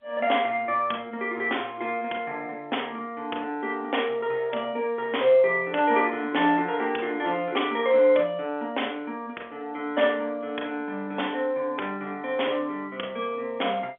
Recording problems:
phone line; 320 Hz to 3.5 kHz, G.711

